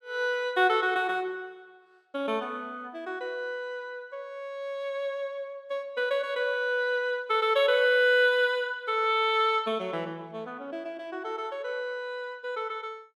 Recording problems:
none

